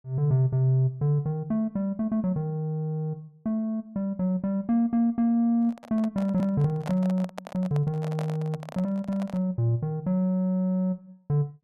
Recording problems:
microphone handling noise; from 5.5 to 9.5 s; peak -6 dB vs average level

